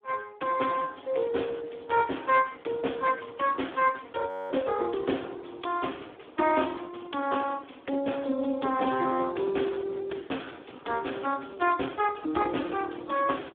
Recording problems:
telephone audio; 220 Hz to 3.5 kHz, Speex
frozen audio; at 4.5 s

